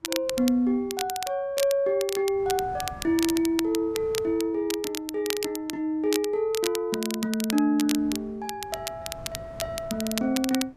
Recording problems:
wind noise; below 440 Hz, SNR 21 dB
crackling; vinyl, SNR 8 dB

